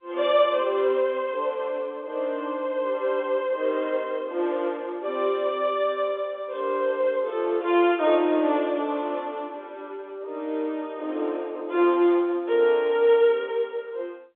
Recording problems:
phone line; 280 Hz to 3.6 kHz, G.711

